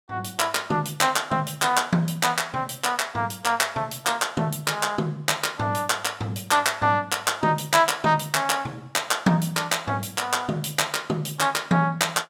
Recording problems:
none

